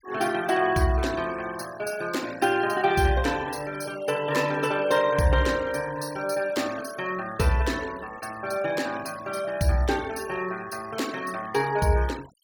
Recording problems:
noise reduction artefacts; signal-to-artefact ratio 16 dB

